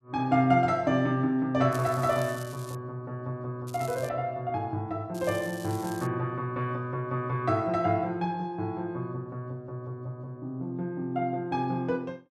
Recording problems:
crackling; from 1.5 to 3 s, at 3.5 s and at 5 s; loose cable, SNR 17 dB

